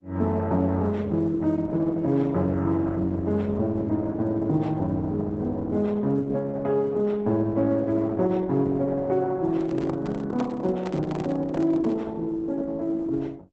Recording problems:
lossy codec; Opus, log-spectral distance 2 dB, nothing above 7.3 kHz
microphone handling noise; from 9.5 to 12 s; peak -4 dB vs average level

